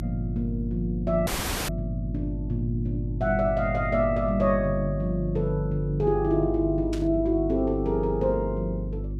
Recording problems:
hum; 50 Hz, harmonics up to 350 Hz, SNR 6 dB
dropout; at 1.5 s
static burst; at 7 s; peak -9 dB vs average level

